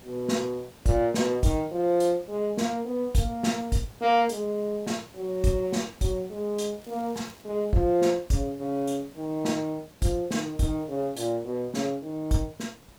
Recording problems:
hiss; slope -4 dB per octave, SNR 24 dB
crackle; at 7 s; loose cable, SNR 28 dB

